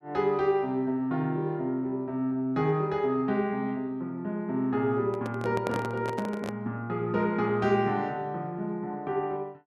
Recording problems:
handling noise; from 5 to 6.5 s; peak -1 dB vs average level

